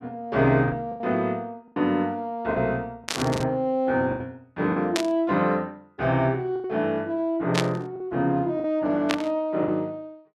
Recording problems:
packet loss; 6% of the sound replaced, filled with the last packet
static burst; 4 times, first at 3 s; peak +4 dB vs average level

